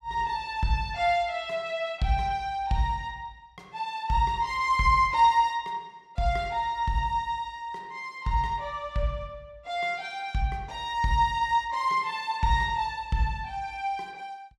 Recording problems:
none

